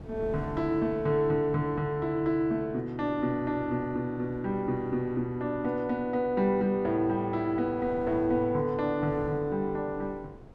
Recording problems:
wind noise; below 330 Hz, SNR 19 dB

